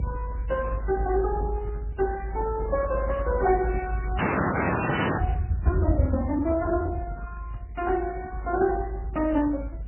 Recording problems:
codec artefacts; Speex, then MP3, log-spectral distance 4 dB, nothing above 2.6 kHz
low-frequency rumble; below 96 Hz, strongest tone 52 Hz, SNR 4 dB
static burst; at 2.5 s and at 8 s; peak -14 dB vs average level
frozen audio; at 4 s for 1 s

